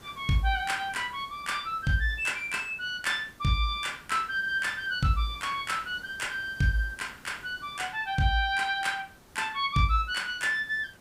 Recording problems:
hiss; slope -5 dB per octave, SNR 24 dB

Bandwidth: 15.5 kHz